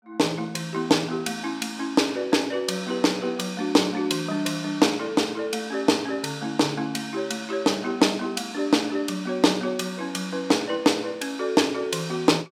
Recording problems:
none

